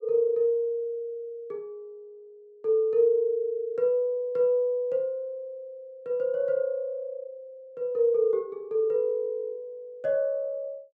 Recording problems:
none

